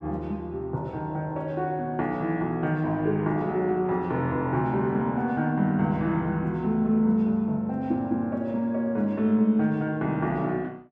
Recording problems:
none

